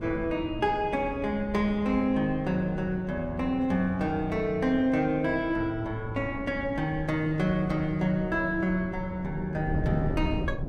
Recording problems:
wind on the microphone; below 230 Hz, SNR 10 dB

